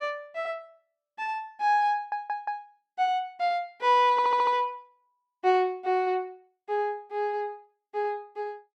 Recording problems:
audio stuttering; at 2 s and at 4 s

